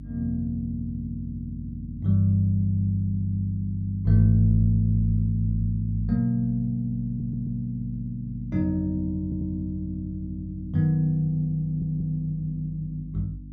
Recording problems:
hum; 50 Hz, harmonics up to 300 Hz, SNR 14 dB
stutter; at 7 s, at 9 s and at 12 s

